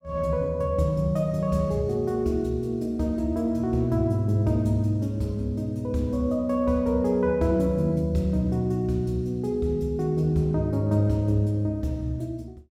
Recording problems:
none

